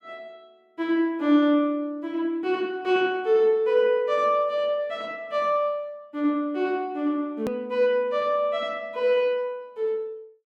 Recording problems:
hard cut with a click; at 7.5 s

